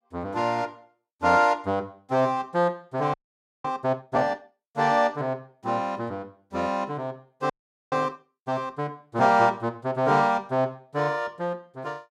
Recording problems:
audio freezing; at 3 s for 0.5 s and at 7.5 s

